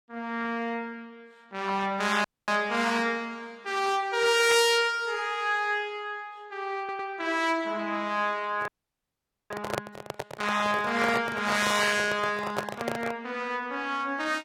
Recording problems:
codec artefacts; AAC, log-spectral distance 3 dB, nothing above 15.5 kHz
dropout; at 2 s and at 8.5 s for 1 s
audio stuttering; at 7 s
handling noise; from 8.5 to 13 s; peak +1 dB vs average level

